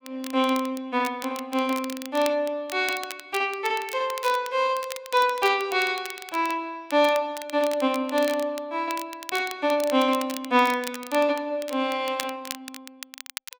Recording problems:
crackling; vinyl, SNR 14 dB

